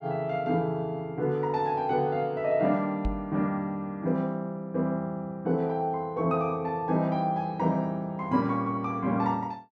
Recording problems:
microphone bump; at 3 s; peak +1 dB vs average level

